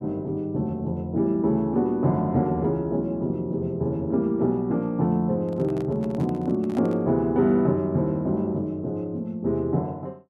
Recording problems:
handling noise; from 5.5 to 7 s; peak -10 dB vs average level

